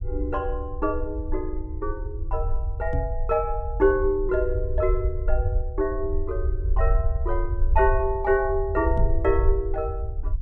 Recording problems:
rumble; below 66 Hz, SNR 2 dB
microphone thump; at 3 s and at 9 s; peak 0 dB vs average level

